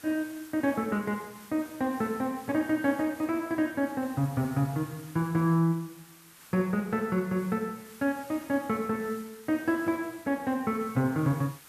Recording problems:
background hiss; SNR 21 dB

